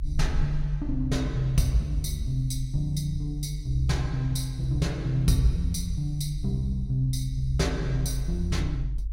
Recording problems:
rumble; below 50 Hz, strongest tone 48 Hz, SNR 7 dB

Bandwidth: 16 kHz